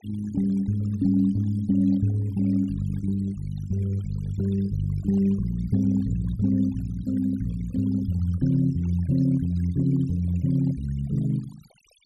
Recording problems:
denoising artefacts; signal-to-artefact ratio 23 dB

